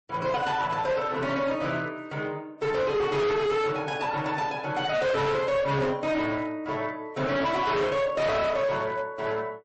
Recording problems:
lossy codec; MP3, log-spectral distance 2 dB, nothing above 8.2 kHz
distortion; hard clipping, uneven, signal-to-distortion ratio 8 dB

